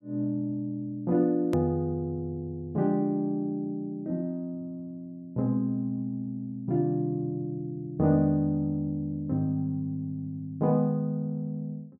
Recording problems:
hard cut with a click; at 1.5 s

